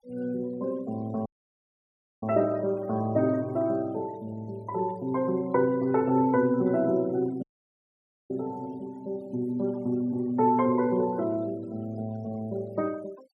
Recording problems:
denoising artefacts; signal-to-artefact ratio 25 dB
audio cutting out; at 1.5 s for 1 s and at 7.5 s for 1 s

